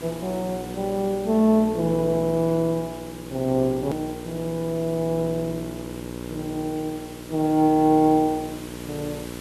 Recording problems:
hum; 60 Hz, harmonics up to 1.5 kHz, SNR 13 dB
hiss; slope -1 dB per octave, SNR 19 dB
click at an edit; at 4 s

